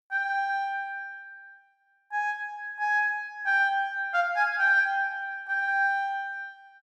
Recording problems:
none

